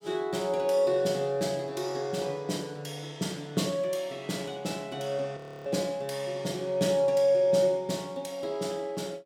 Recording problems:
audio freezing; at 5.5 s

